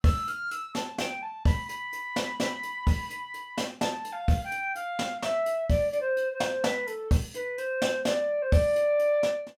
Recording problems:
none

